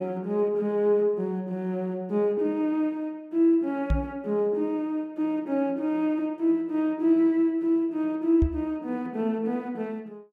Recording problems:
microphone thump; at 4 s and at 8.5 s; peak +4 dB vs average level

